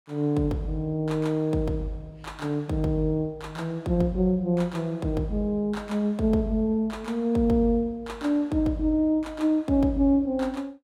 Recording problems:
none

